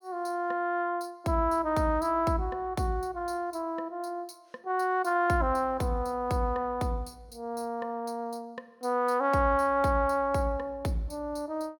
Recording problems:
none

